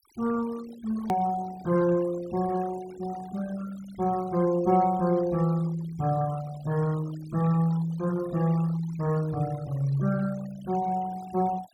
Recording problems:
denoising artefacts; signal-to-artefact ratio 19 dB
edit click; at 1 s

